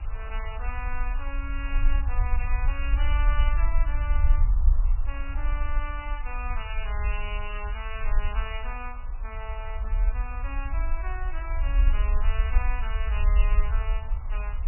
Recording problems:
lossy compression; MP3, log-spectral distance 7 dB, nothing above 2.5 kHz
hiss; SNR 13 dB
rumble; below 50 Hz, SNR -9 dB

